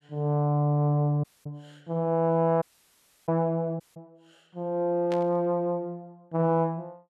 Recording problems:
dropout; at 1 s, at 2.5 s for 0.5 s and at 4 s
burst of static; at 5 s; peak -9 dB vs average level

